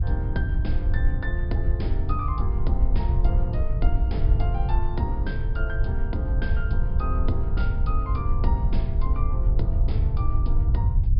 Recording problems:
treble missing; nothing above 5.5 kHz
hum; 50 Hz, harmonics up to 550 Hz, SNR 21 dB
rumble; below 74 Hz, SNR -7 dB

